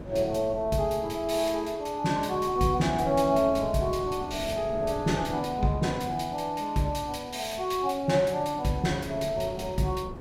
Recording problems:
wind on the microphone; below 370 Hz, SNR 14 dB

